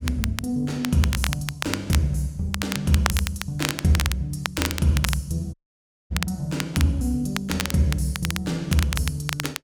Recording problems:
crackle; vinyl, SNR 6 dB
dropout; at 5.5 s for 0.5 s

